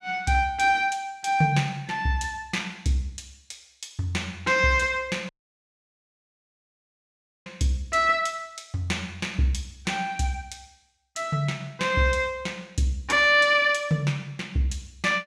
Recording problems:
dropout; at 5.5 s for 2 s

